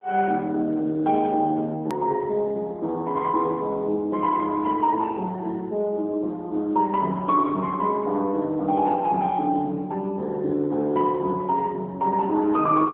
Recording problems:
telephone audio; 190 Hz to 3 kHz, AMR-NB
edit click; at 2 s

